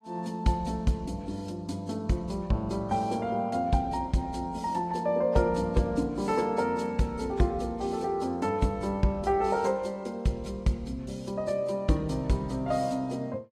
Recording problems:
codec artefacts; AAC, log-spectral distance 2 dB, nothing above 13.1 kHz

